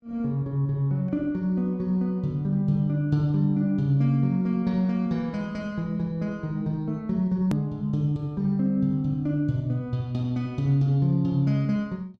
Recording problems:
edit click; at 7.5 s

